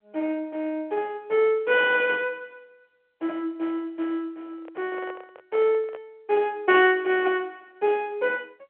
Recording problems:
telephone audio; 260 Hz to 3.3 kHz, G.711
microphone handling noise; from 4.5 to 6 s; peak -10 dB vs average level

